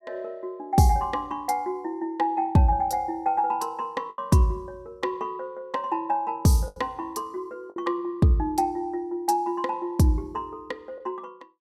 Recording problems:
lost packets; 2% of the sound replaced, filled with the last packet

